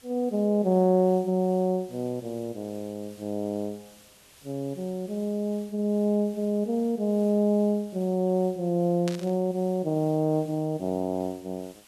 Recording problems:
hiss; slope 0 dB per octave, SNR 26 dB
burst of static; at 9 s; peak -5 dB vs average level

